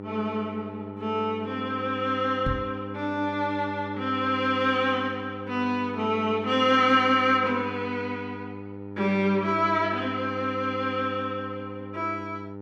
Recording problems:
electrical hum; 50 Hz, harmonics up to 1.4 kHz, SNR 11 dB
microphone thump; at 2.5 s; peak -1 dB vs average level

